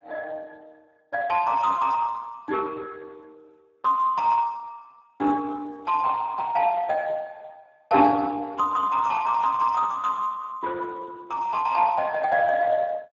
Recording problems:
codec artefacts; Speex, log-spectral distance 3 dB, nothing above 6.9 kHz

